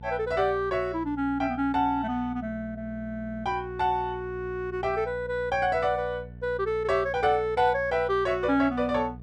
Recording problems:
hum; 60 Hz, harmonics up to 660 Hz, SNR 16 dB

